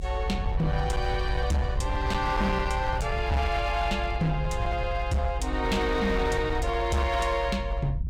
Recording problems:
distortion; hard clipping, signal-to-distortion ratio 11 dB
low-frequency rumble; below 72 Hz, SNR 4 dB

